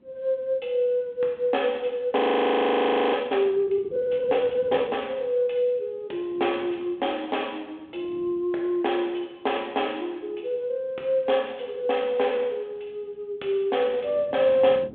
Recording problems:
telephone audio; 300 Hz to 3.5 kHz, G.726
wind on the microphone; below 1.1 kHz, SNR 21 dB
audio freezing; at 2 s for 1 s

